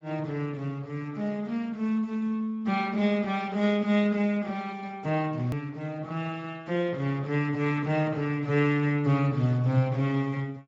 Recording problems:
lossy codec; Speex, log-spectral distance 3 dB, nothing above 20.1 kHz
hard cut with a click; at 5.5 s

